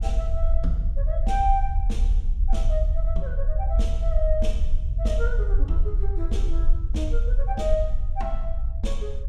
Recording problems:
low-frequency rumble; below 52 Hz, SNR -5 dB

